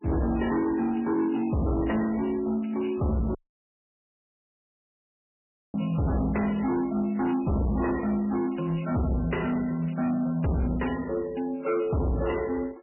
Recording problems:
lossy codec; MP3, log-spectral distance 7 dB, nothing above 2.9 kHz
distorted audio; hard clipping, signal-to-distortion ratio 6 dB
audio cutting out; at 3.5 s for 2.5 s
crackle; from 8.5 to 9.5 s; loose cable, SNR 27 dB

